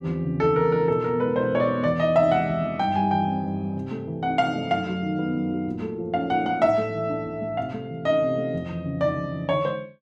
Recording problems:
none

